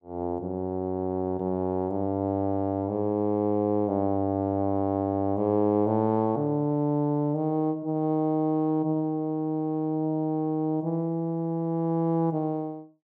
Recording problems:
none

